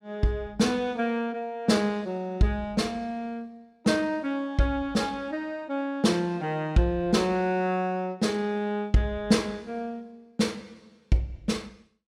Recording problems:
none

